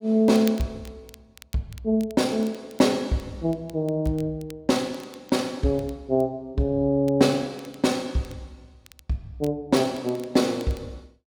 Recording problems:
crackling; vinyl, SNR 25 dB

